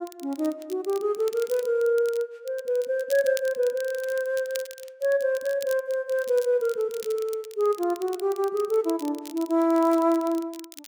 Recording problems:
crackling; vinyl, SNR 19 dB

